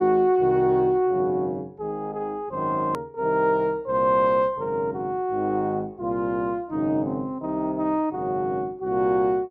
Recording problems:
click at an edit; at 3 s

